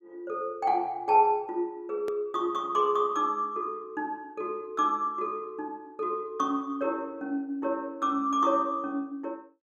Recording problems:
hard cut with a click; at 2 s

